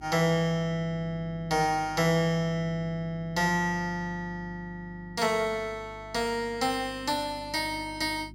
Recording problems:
hum; 50 Hz, harmonics up to 350 Hz, SNR 19 dB

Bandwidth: 16 kHz